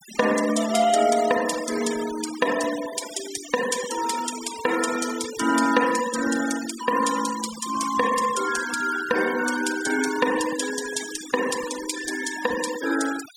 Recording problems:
noise reduction artefacts; signal-to-artefact ratio 10 dB

